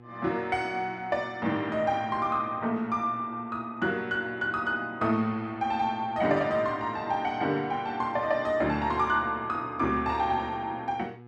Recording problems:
hum; 60 Hz, harmonics up to 1.7 kHz, SNR 22 dB

